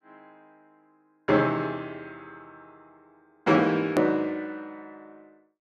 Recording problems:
edit click; at 4 s

